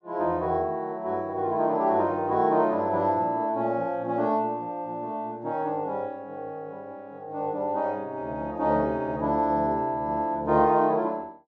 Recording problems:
low-pass filter; nothing above 8 kHz

